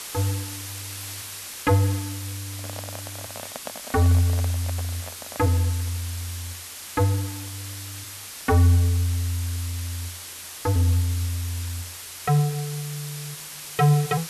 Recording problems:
hiss; slope +1 dB per octave, SNR 10 dB
microphone handling noise; from 2.5 to 5.5 s; peak -6 dB vs average level

